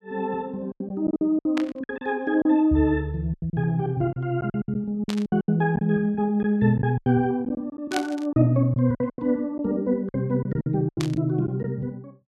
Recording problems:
packet loss; 12% of the sound replaced, filled with silence
burst of static; 4 times, first at 1.5 s; peak -2 dB vs average level

